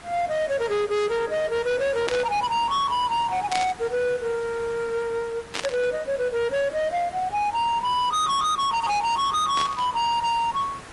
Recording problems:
lossy compression; MP3, then AAC, log-spectral distance 2 dB, nothing above 11.3 kHz
distortion; hard clipping, signal-to-distortion ratio 6 dB
background hiss; SNR 18 dB
burst of static; 4 times, first at 2 s; peak 0 dB vs average level

